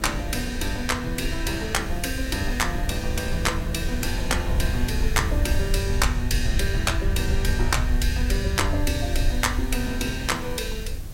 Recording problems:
hiss; SNR 20 dB
rumble; below 78 Hz, SNR 2 dB
wind on the microphone; below 270 Hz, SNR 12 dB

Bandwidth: 16 kHz